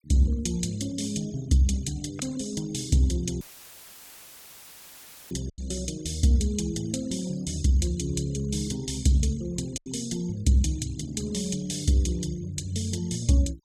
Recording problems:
noise reduction artefacts; signal-to-artefact ratio 20 dB
packet loss; 1.4% of the sound replaced, filled with silence
audio cutting out; at 3.5 s for 2 s; filled with static

